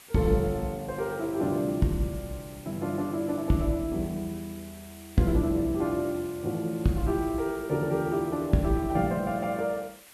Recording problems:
background hiss; slope 0 dB per octave, SNR 20 dB

